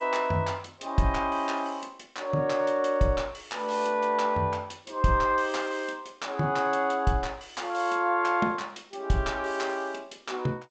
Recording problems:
lossy compression; G.722, log-spectral distance 3 dB, nothing above 7.8 kHz

